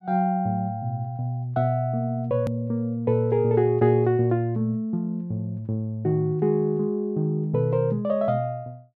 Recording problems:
edit click; at 2.5 s

